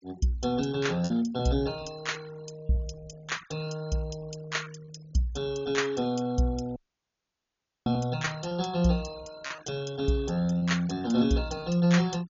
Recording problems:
treble cut off; nothing above 7.1 kHz
denoising artefacts; signal-to-artefact ratio 20 dB
packet loss; 5% of the sound replaced, filled with repeated pitch periods
dropout; at 7 s for 1 s

